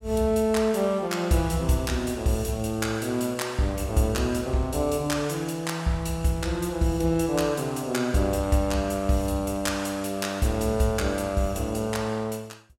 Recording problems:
none

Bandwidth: 16.5 kHz